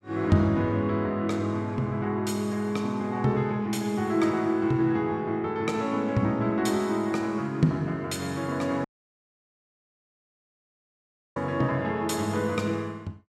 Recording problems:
dropout; at 9 s for 2.5 s

